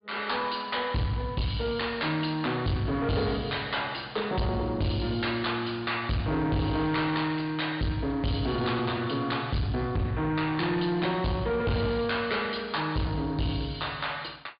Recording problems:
treble cut off; nothing above 4.7 kHz
distortion; soft clipping, signal-to-distortion ratio 7 dB

